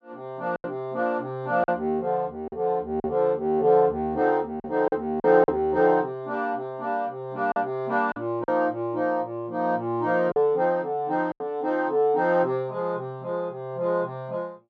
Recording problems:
lost packets; 4% of the sound replaced, filled with silence

